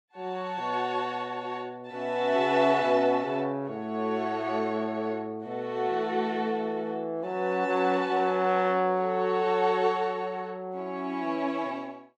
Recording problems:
none

